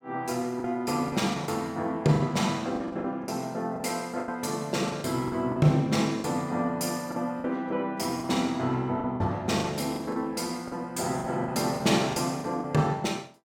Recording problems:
packet loss; 10% of the sound replaced, filled with the last packet

